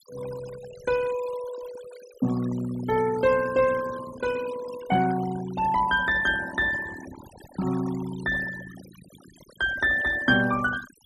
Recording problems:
denoising artefacts; signal-to-artefact ratio 15 dB

